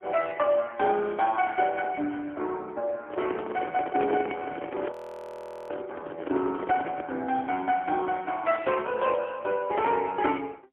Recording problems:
phone line; 240 Hz to 2.2 kHz, AMR-NB, then MP3
handling noise; from 3 to 7 s; peak -1 dB vs average level
frozen audio; at 5 s for 1 s

